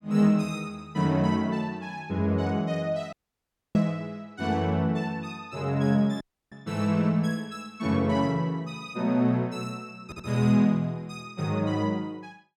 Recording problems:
dropout; at 3 s for 0.5 s and at 6 s
stutter; at 10 s

